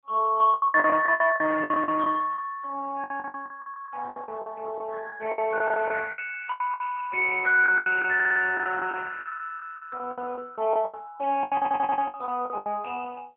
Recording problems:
phone line; 280 Hz to 2.6 kHz, AMR-NB
lost packets; 17% of the sound replaced, filled with the last packet
audio stuttering; at 8 s and at 12 s

